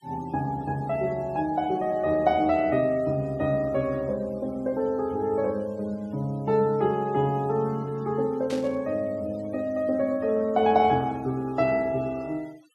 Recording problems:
denoising artefacts; signal-to-artefact ratio 27 dB
burst of static; at 8.5 s; peak -9 dB vs average level

